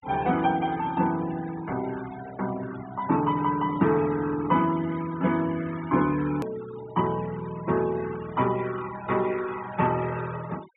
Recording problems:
treble missing; nothing above 4 kHz
noise reduction artefacts; signal-to-artefact ratio 17 dB
edit click; at 6.5 s

